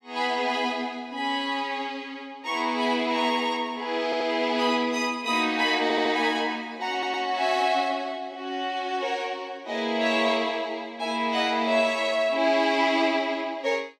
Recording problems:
audio stuttering; at 4 s, at 6 s and at 7 s

